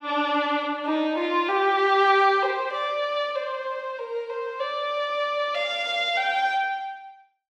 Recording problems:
none

